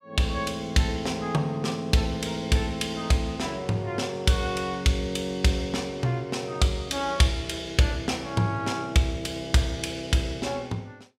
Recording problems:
none

